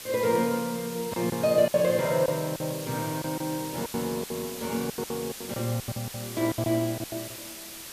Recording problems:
background hiss; slope 0 dB per octave, SNR 10 dB
lost packets; 13% of the sound replaced, filled with silence

